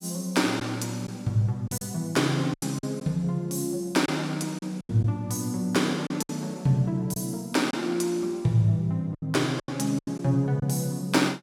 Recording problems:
lost packets; 7% of the sound replaced, filled with silence

